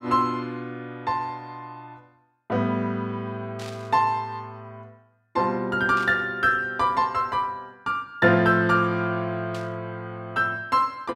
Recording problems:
burst of static; at 3.5 s, at 6 s and at 9.5 s; peak -11 dB vs average level

